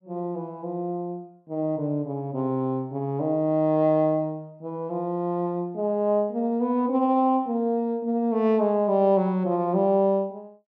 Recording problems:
none

